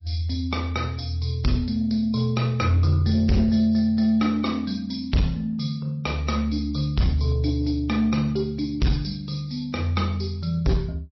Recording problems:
lossy codec; MP3, log-spectral distance 3 dB, nothing above 5.7 kHz
distortion; soft clipping, signal-to-distortion ratio 10 dB

